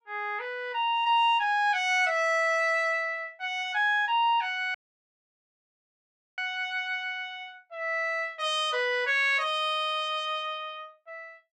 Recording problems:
dropout; at 4.5 s for 1.5 s

